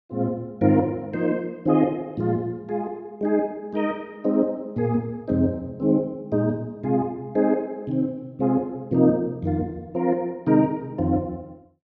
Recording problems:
none

